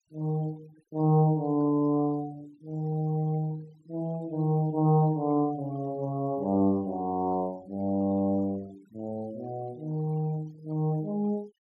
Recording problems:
denoising artefacts; signal-to-artefact ratio 27 dB

